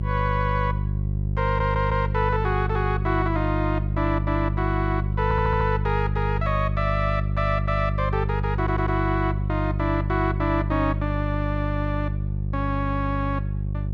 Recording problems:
mains hum; 50 Hz, harmonics up to 400 Hz, SNR 0 dB
stutter; at 1.5 s, at 5 s and at 8.5 s

